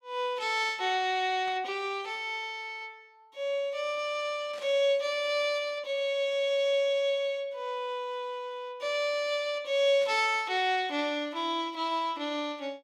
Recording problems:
burst of static; at 1.5 s, at 4.5 s and at 10 s; peak -14 dB vs average level

